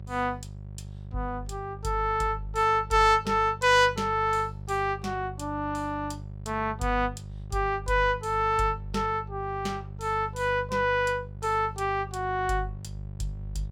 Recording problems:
hum; 50 Hz, harmonics up to 600 Hz, SNR 14 dB

